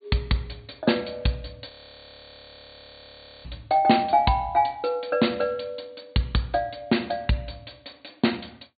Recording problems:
low-pass filter; nothing above 4.6 kHz
audio freezing; at 1.5 s for 2 s

